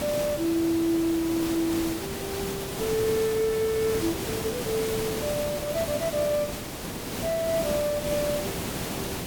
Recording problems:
background hiss; slope -4 dB per octave, SNR 4 dB

